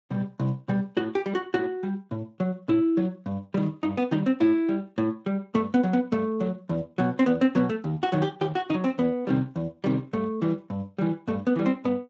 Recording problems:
codec artefacts; Speex, log-spectral distance 2 dB

